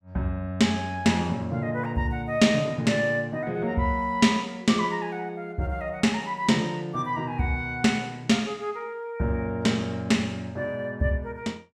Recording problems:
none

